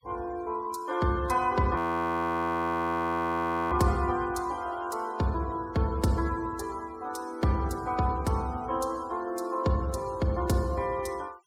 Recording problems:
denoising artefacts; signal-to-artefact ratio 24 dB
audio freezing; at 2 s for 2 s

